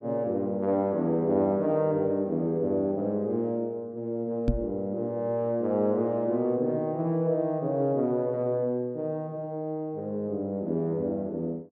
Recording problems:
microphone bump; at 4.5 s; peak +7 dB vs average level

